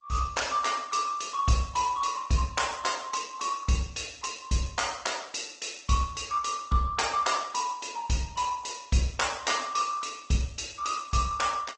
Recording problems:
lossy compression; G.722, then Opus, log-spectral distance 7 dB, nothing above 8 kHz

